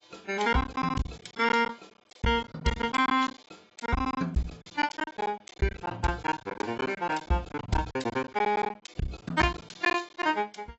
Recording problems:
lossy compression; AAC, log-spectral distance 4 dB, nothing above 7.8 kHz
packet loss; 17% of the sound replaced, filled with silence

